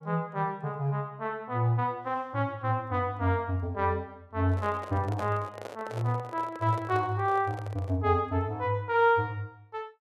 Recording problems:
handling noise; from 4.5 to 8 s; peak -5 dB vs average level

